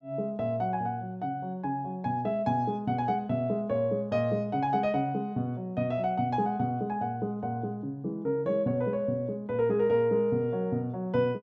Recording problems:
none

